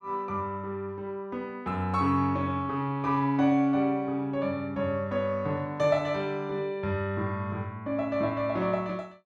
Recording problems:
none

